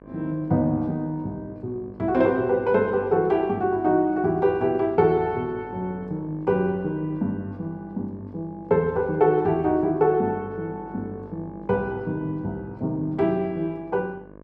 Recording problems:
electrical hum; 50 Hz, harmonics up to 1.6 kHz, SNR 21 dB

